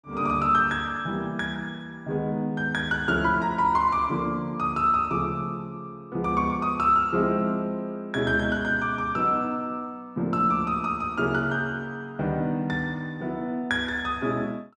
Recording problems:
none

